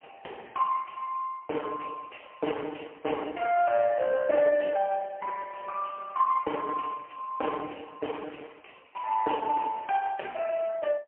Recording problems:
telephone audio; 320 Hz to 3.1 kHz, AMR-NB, then MP3

